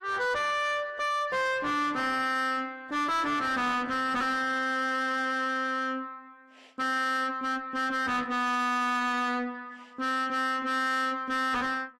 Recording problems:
codec artefacts; AAC, log-spectral distance 2 dB, nothing above 13.1 kHz
distorted audio; soft clipping, signal-to-distortion ratio 5 dB

